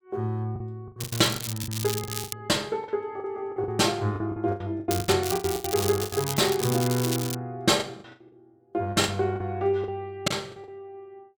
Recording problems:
packet loss; 14% of the sound replaced, filled with the last packet
crackle; from 1 to 2.5 s and from 5 to 7.5 s; loose cable, SNR 6 dB

